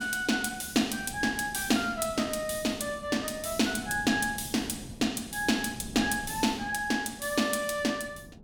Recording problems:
wind on the microphone; below 270 Hz, SNR 17 dB

